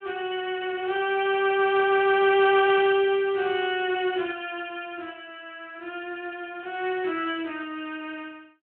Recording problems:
phone line; 320 Hz to 3.5 kHz, Speex

